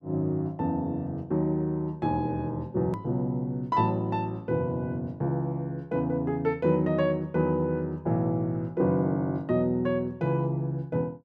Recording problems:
hard cut with a click; at 3 s

